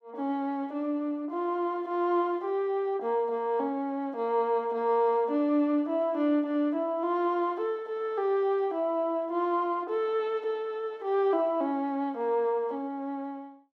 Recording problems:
none

